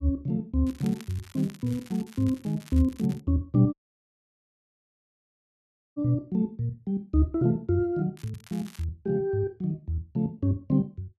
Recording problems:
crackle; from 0.5 to 3 s and at 8 s; loose cable, SNR 23 dB
audio cutting out; at 3.5 s for 2 s

